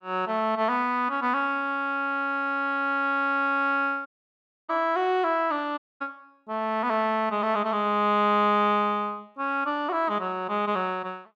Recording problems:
dropout; at 4 s for 0.5 s and at 6 s

